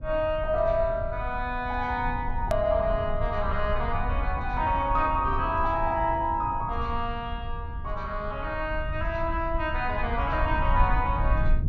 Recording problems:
low-pass filter; nothing above 8 kHz
low-frequency rumble; below 76 Hz, SNR 6 dB
edit click; at 2.5 s

